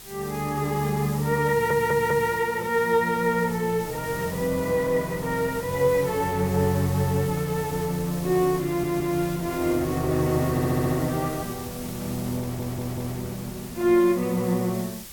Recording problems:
background hiss; slope +3 dB per octave, SNR 15 dB
wind noise; below 930 Hz, SNR 19 dB
audio stuttering; 4 times, first at 1.5 s

